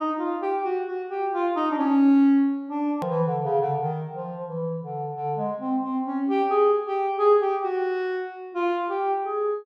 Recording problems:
click at an edit; at 3 s

